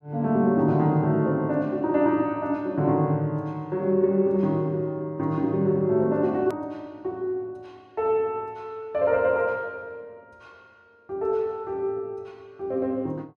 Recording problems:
click at an edit; at 6.5 s

